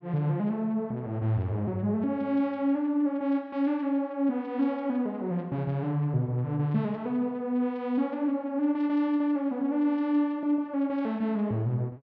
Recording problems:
none

